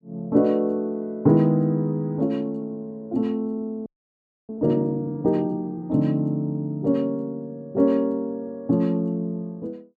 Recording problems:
frozen audio; at 4 s for 0.5 s

